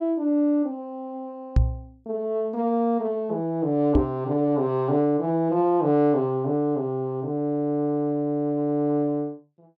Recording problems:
microphone thump; at 1.5 s and at 4 s; peak +8 dB vs average level

